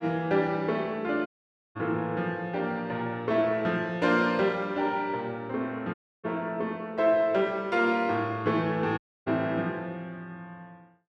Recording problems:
audio cutting out; at 1.5 s, at 6 s and at 9 s

